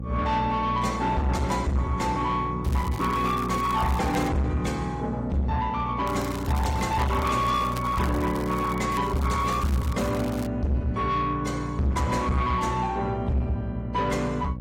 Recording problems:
codec artefacts; AAC, log-spectral distance 2 dB, nothing above 15.5 kHz
distortion; soft clipping, signal-to-distortion ratio 8 dB
hum; 60 Hz, harmonics up to 600 Hz, SNR 9 dB
crackle; from 2.5 to 4.5 s, from 6 to 9 s and from 9 to 10 s; loose cable, SNR 17 dB

